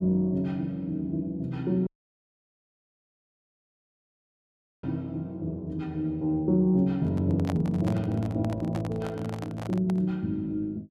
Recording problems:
audio cutting out; at 2 s for 3 s
handling noise; from 7 to 10 s; peak -3 dB vs average level

